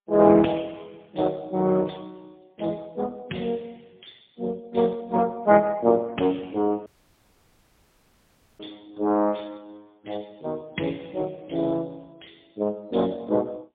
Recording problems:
telephone audio; 150 Hz to 2.2 kHz, AMR-NB, then MP3
audio cutting out; at 7 s for 1.5 s

